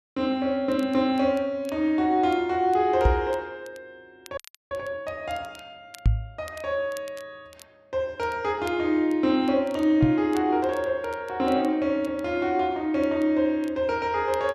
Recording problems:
crackle; vinyl, SNR 27 dB
knock on the microphone; at 3 s, at 6 s and at 10 s; peak +7 dB vs average level
audio freezing; at 4.5 s

